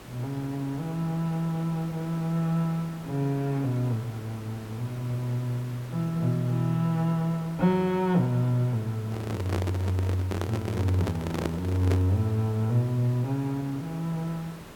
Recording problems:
hiss; slope -5 dB per octave, SNR 16 dB
handling noise; from 9 to 12 s; peak +2 dB vs average level

